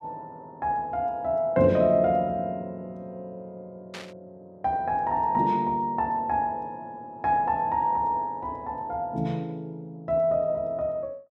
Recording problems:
burst of static; at 4 s; peak -9 dB vs average level

